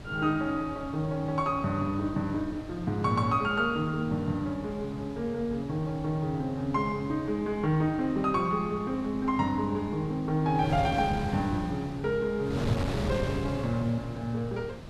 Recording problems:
wind on the microphone; below 420 Hz, SNR 10 dB

